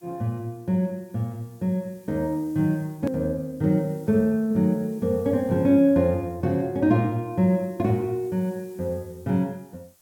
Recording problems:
hiss; SNR 30 dB
click at an edit; at 3 s

